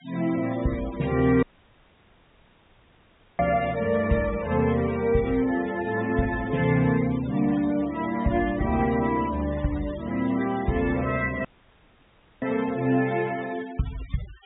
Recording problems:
low-pass filter; nothing above 4 kHz
denoising artefacts; signal-to-artefact ratio 18 dB
dropout; at 1.5 s for 2 s and at 11 s for 1 s

